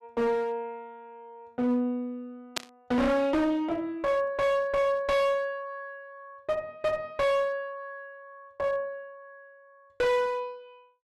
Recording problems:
distortion; hard clipping, uneven, signal-to-distortion ratio 7 dB
burst of static; at 2.5 s; peak +3 dB vs average level

